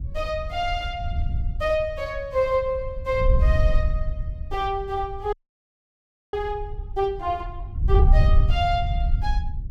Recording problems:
wind noise; below 74 Hz, SNR -1 dB
audio freezing; at 5.5 s for 1 s

